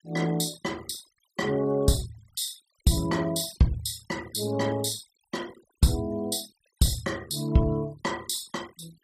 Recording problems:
noise reduction artefacts; signal-to-artefact ratio 20 dB

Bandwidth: 15 kHz